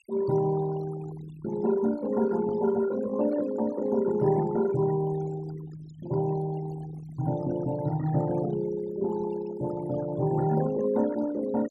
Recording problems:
noise reduction artefacts; signal-to-artefact ratio 14 dB

